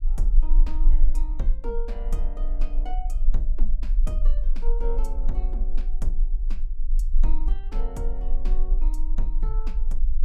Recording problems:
rumble; below 34 Hz, strongest tone 20 Hz, SNR -12 dB

